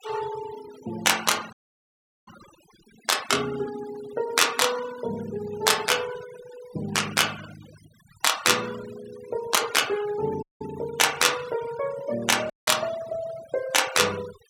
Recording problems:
denoising artefacts; signal-to-artefact ratio 17 dB
dropout; at 1.5 s for 0.5 s, at 10 s and at 13 s

